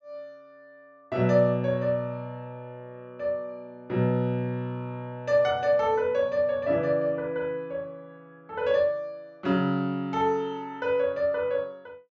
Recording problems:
treble missing; nothing above 8 kHz

